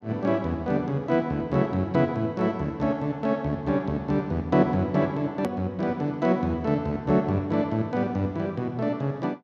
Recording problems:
edit click; at 5.5 s

